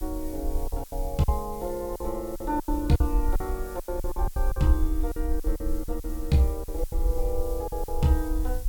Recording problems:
hiss; slope +1 dB per octave, SNR 16 dB
rumble; below 50 Hz, SNR 4 dB
lost packets; 13% of the sound replaced, filled with silence

